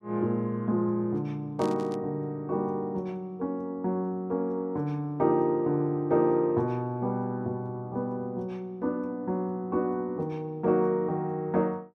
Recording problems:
burst of static; at 1.5 s; peak -11 dB vs average level

